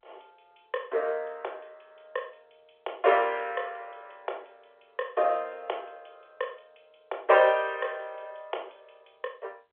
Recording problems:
phone line; 340 Hz to 3.5 kHz, G.711

